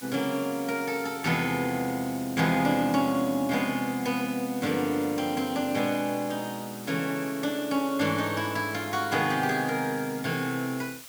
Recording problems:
hiss; slope +1 dB per octave, SNR 15 dB

